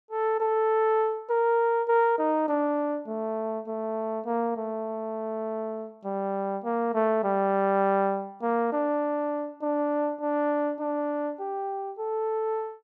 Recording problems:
none

